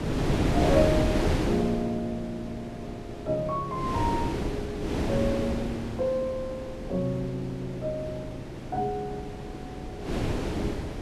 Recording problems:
wind noise; below 470 Hz, SNR 0 dB

